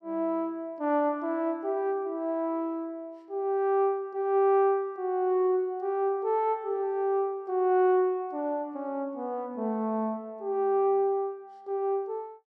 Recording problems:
none

